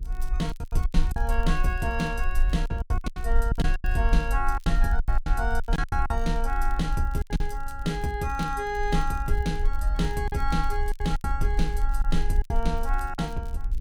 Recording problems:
mains hum; 50 Hz, harmonics up to 450 Hz, SNR 19 dB
rumble; below 46 Hz, strongest tone 20 Hz, SNR 0 dB
crackle; vinyl, SNR 27 dB
lost packets; 12% of the sound replaced, filled with silence

